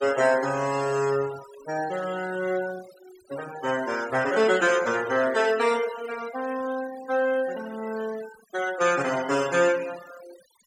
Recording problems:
denoising artefacts; signal-to-artefact ratio 16 dB

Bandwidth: 17 kHz